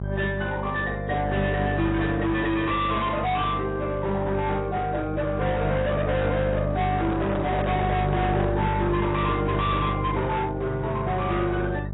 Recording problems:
lossy compression; AAC, log-spectral distance 3 dB, nothing above 3.8 kHz
distortion; hard clipping, signal-to-distortion ratio 7 dB
hum; 50 Hz, harmonics up to 800 Hz, SNR 4 dB
microphone handling noise; from 7 to 8.5 s; peak -2 dB vs average level

